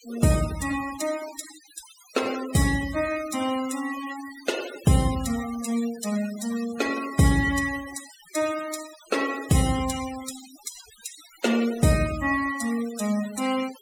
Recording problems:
noise reduction artefacts; signal-to-artefact ratio 13 dB

